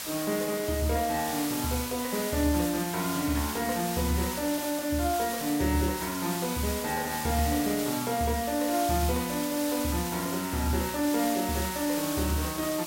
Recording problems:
hiss; slope +1 dB per octave, SNR 6 dB

